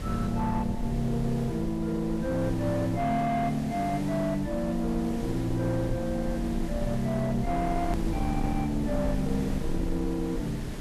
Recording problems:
distorted audio; soft clipping, signal-to-distortion ratio 11 dB
hiss; slope -5 dB per octave, SNR 12 dB
low-frequency rumble; below 84 Hz, SNR 8 dB
click at an edit; at 8 s

